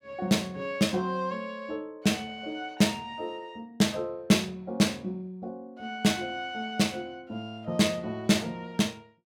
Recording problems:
none

